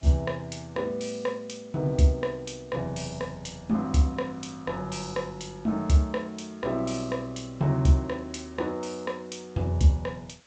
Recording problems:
lossy codec; G.722, log-spectral distance 4 dB, nothing above 7.8 kHz
background hiss; slope -1 dB per octave, SNR 28 dB

